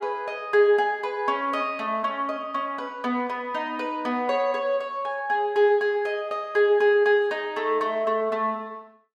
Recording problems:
none

